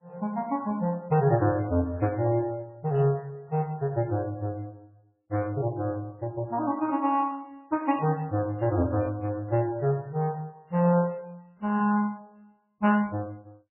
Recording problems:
codec artefacts; MP2, then MP3, log-spectral distance 2 dB, nothing above 2.5 kHz

